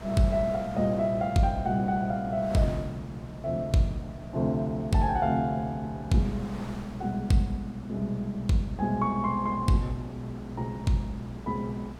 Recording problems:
hum; 60 Hz, harmonics up to 540 Hz, SNR 17 dB
wind noise; below 1.3 kHz, SNR 19 dB

